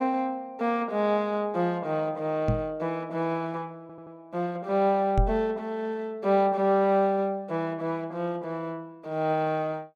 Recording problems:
knock on the microphone; at 2.5 s and at 5 s; peak +6 dB vs average level
stutter; at 4 s

